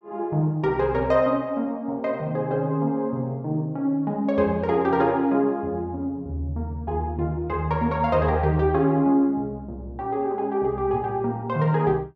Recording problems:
none

